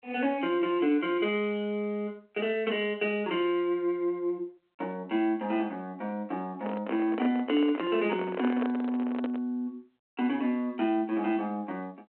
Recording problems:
phone line; 220 Hz to 3.2 kHz, G.726
microphone handling noise; from 6.5 to 9.5 s; peak -1 dB vs average level

